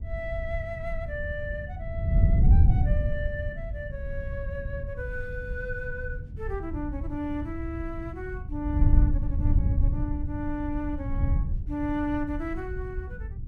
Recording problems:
wind on the microphone; below 92 Hz, SNR -5 dB

